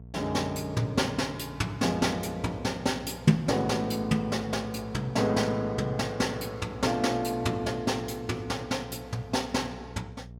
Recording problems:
electrical hum; 60 Hz, harmonics up to 660 Hz, SNR 18 dB

